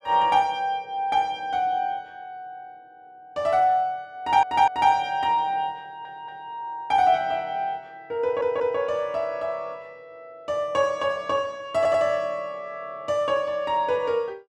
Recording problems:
audio stuttering; 4 times, first at 4 s

